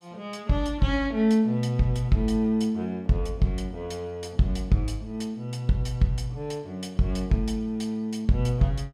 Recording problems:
none

